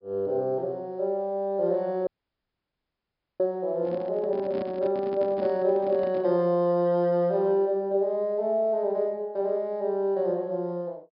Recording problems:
treble missing; nothing above 5.5 kHz
dropout; at 2 s for 1.5 s
handling noise; from 4 to 6.5 s; peak -7 dB vs average level

